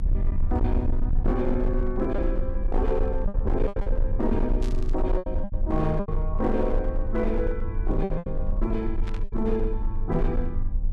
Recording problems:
distorted audio; hard clipping, uneven, signal-to-distortion ratio 10 dB
hum; 50 Hz, harmonics up to 800 Hz, SNR 13 dB
rumble; below 44 Hz, strongest tone 22 Hz, SNR 1 dB
packet loss; 6% of the sound replaced, filled with repeated pitch periods
static burst; at 4.5 s and at 9 s; peak -9 dB vs average level

